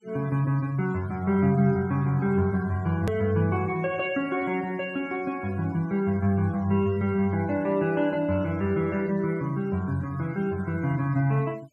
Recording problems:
denoising artefacts; signal-to-artefact ratio 25 dB
click at an edit; at 3 s

